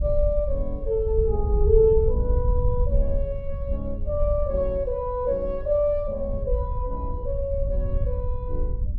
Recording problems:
wind on the microphone; below 68 Hz, SNR 2 dB

